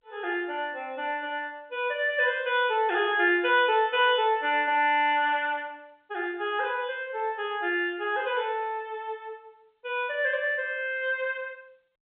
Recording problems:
telephone audio; 300 Hz to 3.6 kHz, G.711

